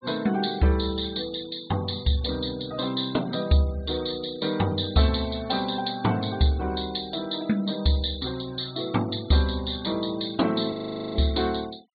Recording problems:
low-pass filter; nothing above 4.4 kHz
noise reduction artefacts; signal-to-artefact ratio 22 dB
frozen audio; at 11 s

